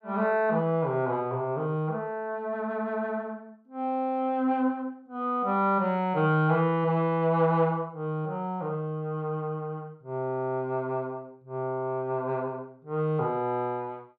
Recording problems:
none

